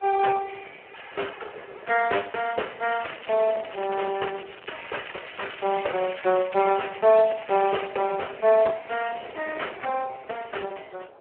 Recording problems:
phone line; 320 Hz to 3.1 kHz, Speex
wind noise; below 830 Hz, SNR 21 dB
crackle; from 3 to 8 s; loose cable, SNR 16 dB

